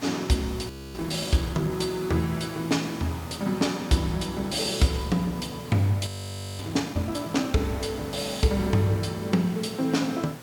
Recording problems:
mains hum; 60 Hz, harmonics up to 720 Hz, SNR 21 dB
hiss; slope -4 dB per octave, SNR 16 dB
frozen audio; at 0.5 s and at 6 s for 0.5 s

